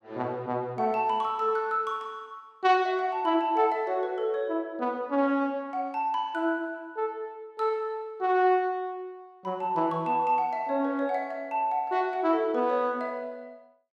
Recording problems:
none

